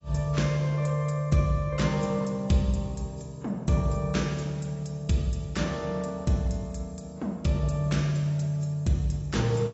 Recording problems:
lossy compression; AAC, log-spectral distance 3 dB, nothing above 7.6 kHz

